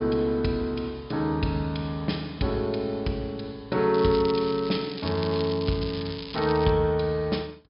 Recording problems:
treble cut off; nothing above 5.5 kHz
crackling; from 4 to 6.5 s; loose cable, SNR 13 dB

